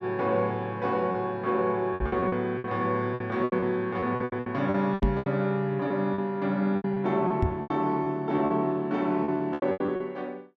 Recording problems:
lost packets; 14% of the sound replaced, filled with repeated pitch periods
microphone thump; at 2 s, at 5 s and at 7.5 s; peak +4 dB vs average level

